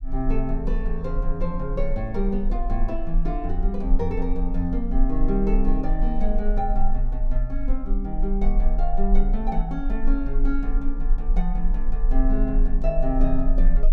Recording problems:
low-frequency rumble; below 34 Hz, strongest tone 20 Hz, SNR -1 dB

